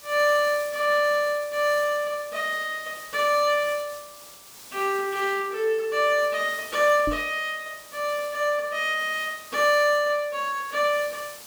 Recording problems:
hiss; slope 0 dB per octave, SNR 18 dB
microphone bump; at 7 s; peak -2 dB vs average level

